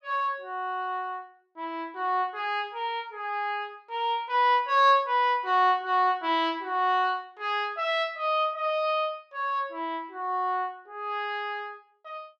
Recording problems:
none

